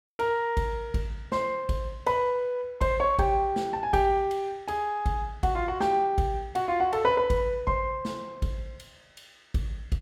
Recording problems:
none

